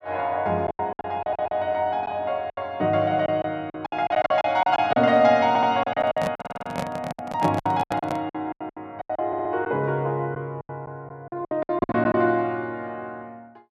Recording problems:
packet loss; 14% of the sound replaced, filled with silence
stutter; 4 times, first at 1 s
handling noise; from 6 to 8 s; peak -1 dB vs average level

